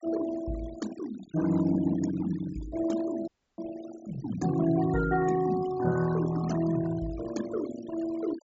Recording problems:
treble missing; nothing above 8 kHz
denoising artefacts; signal-to-artefact ratio 14 dB
dropout; at 3.5 s

